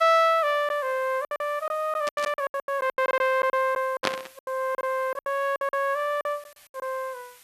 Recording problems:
hiss; SNR 25 dB
packet loss; 15% of the sound replaced, filled with silence
static burst; at 2 s and at 4 s; peak +4 dB vs average level

